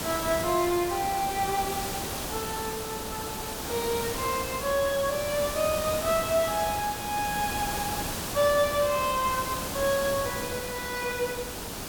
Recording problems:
background hiss; SNR 4 dB

